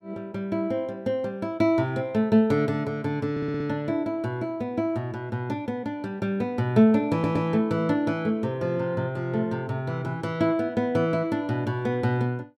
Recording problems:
stutter; at 3.5 s and at 7 s

